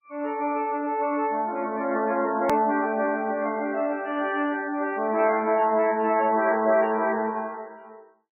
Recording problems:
lossy codec; MP3, log-spectral distance 3 dB, nothing above 16.1 kHz
edit click; at 2.5 s

